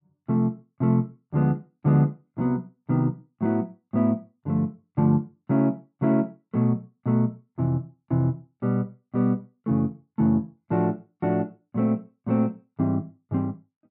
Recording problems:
none

